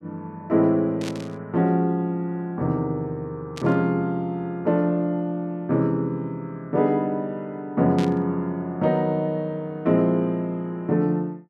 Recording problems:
burst of static; at 1 s, at 3.5 s and at 8 s; peak -7 dB vs average level

